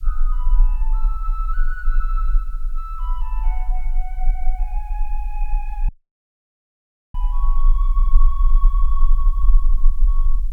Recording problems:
background hiss; slope +4 dB per octave, SNR 25 dB
rumble; below 34 Hz, strongest tone 22 Hz, SNR -14 dB
audio cutting out; at 6 s for 1.5 s

